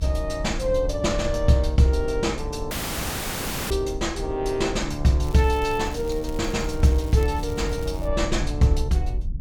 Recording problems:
low-frequency rumble; below 72 Hz, SNR 9 dB
audio cutting out; at 2.5 s for 1 s
crackle; from 5 to 8 s; loose cable, SNR 22 dB

